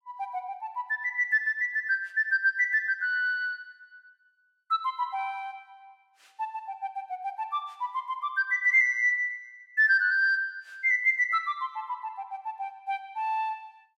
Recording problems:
none

